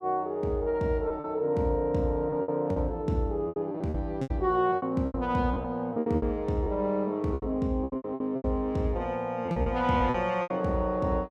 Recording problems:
packet loss; 12% of the sound replaced, filled with repeated pitch periods

